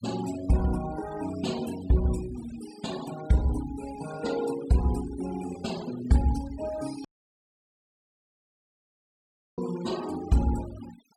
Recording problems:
noise reduction artefacts; signal-to-artefact ratio 15 dB
dropout; at 7 s for 2.5 s

